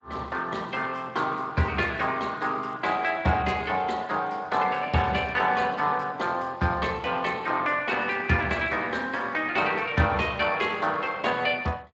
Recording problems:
codec artefacts; Opus, then Speex, log-spectral distance 4 dB, nothing above 7.3 kHz

